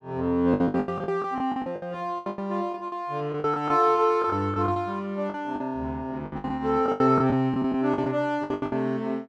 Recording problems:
packet loss; 17% of the sound replaced, filled with the last packet

